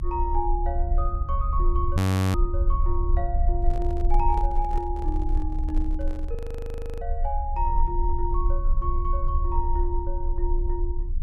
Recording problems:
rumble; below 66 Hz, strongest tone 30 Hz, SNR -4 dB
frozen audio; at 2 s and at 6.5 s for 0.5 s
microphone handling noise; from 3.5 to 6.5 s; peak -5 dB vs average level

